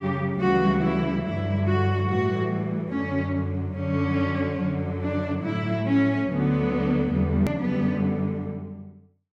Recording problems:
hard cut with a click; at 7.5 s

